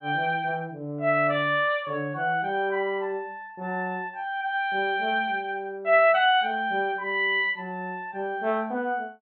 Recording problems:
treble missing; nothing above 4 kHz

